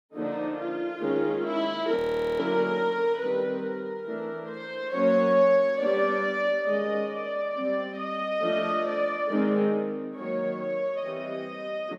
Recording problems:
frozen audio; at 2 s

